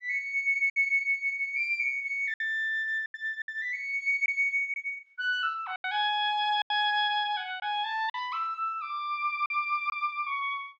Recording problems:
lost packets; 6% of the sound replaced, filled with silence

